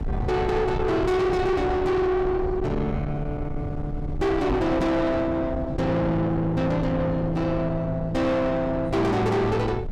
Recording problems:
distortion; soft clipping, signal-to-distortion ratio 5 dB
low-frequency rumble; below 370 Hz, SNR 8 dB
microphone thump; at 4.5 s; peak +4 dB vs average level

